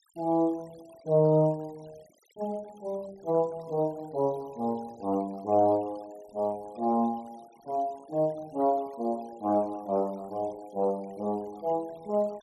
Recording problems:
noise reduction artefacts; signal-to-artefact ratio 27 dB

